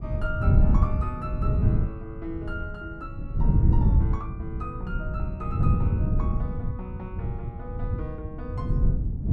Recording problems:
wind noise; below 130 Hz, SNR -10 dB

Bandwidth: 12 kHz